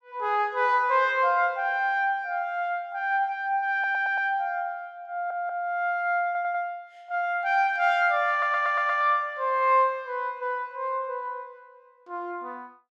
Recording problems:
stutter; 4 times, first at 3.5 s

